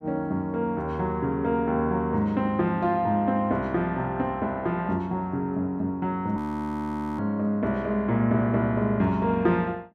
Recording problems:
audio freezing; at 6.5 s for 1 s

